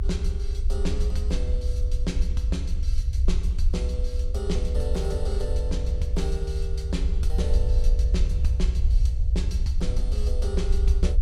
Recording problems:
low-frequency rumble; below 66 Hz, SNR -7 dB

